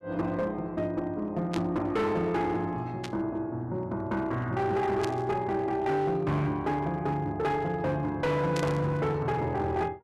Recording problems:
distorted audio; hard clipping, uneven, signal-to-distortion ratio 11 dB
static burst; 4 times, first at 1.5 s; peak -4 dB vs average level

